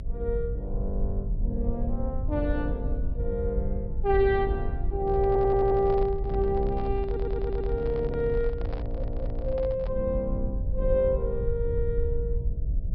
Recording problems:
treble cut off; nothing above 5.5 kHz
hum; 60 Hz, harmonics up to 660 Hz, SNR 21 dB
rumble; below 70 Hz, SNR 3 dB
handling noise; from 5 to 10 s; peak -9 dB vs average level
audio stuttering; at 5.5 s, at 7 s and at 9 s

